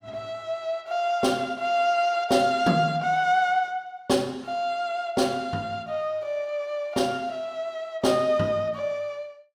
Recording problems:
none

